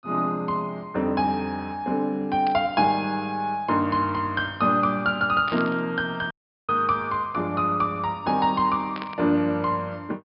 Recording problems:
treble cut off; nothing above 5.5 kHz
burst of static; at 2.5 s, at 5.5 s and at 9 s; peak -8 dB vs average level
dropout; at 6.5 s

